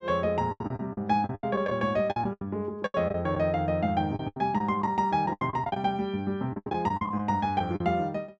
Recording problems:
packet loss; 15% of the sound replaced, filled with the last packet

